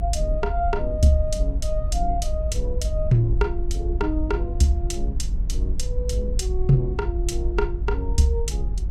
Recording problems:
hum; 50 Hz, harmonics up to 400 Hz, SNR 18 dB
low-frequency rumble; below 56 Hz, SNR 2 dB

